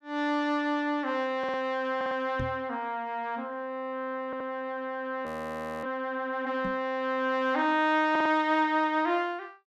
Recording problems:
stutter; 4 times, first at 1.5 s
microphone bump; at 2.5 s and at 6.5 s; peak -3 dB vs average level
frozen audio; at 5.5 s for 0.5 s

